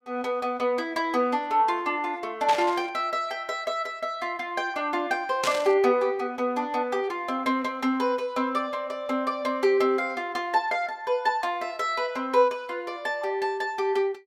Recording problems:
static burst; at 2.5 s and at 5.5 s; peak +2 dB vs average level

